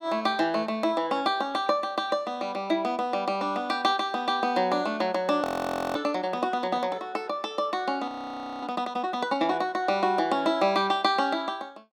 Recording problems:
audio freezing; at 5.5 s for 0.5 s and at 8 s for 0.5 s

